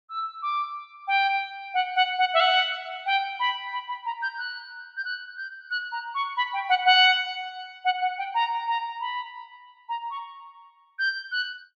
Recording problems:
none

